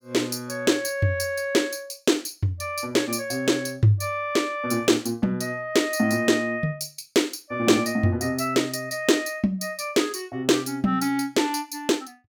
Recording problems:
none

